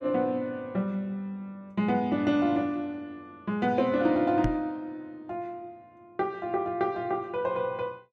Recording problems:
knock on the microphone; at 4.5 s; peak +3 dB vs average level

